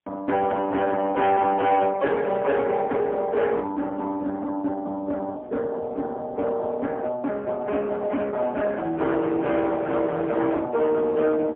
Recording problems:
telephone audio; 280 Hz to 3.4 kHz, AMR-NB, then MP3
distortion; hard clipping, signal-to-distortion ratio 11 dB

